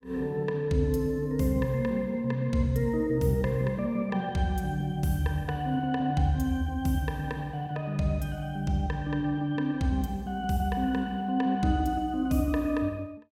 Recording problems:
none

